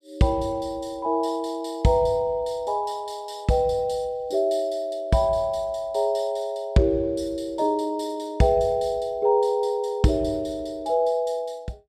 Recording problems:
none

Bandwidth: 14.5 kHz